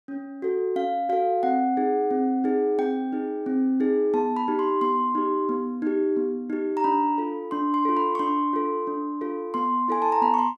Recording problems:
none

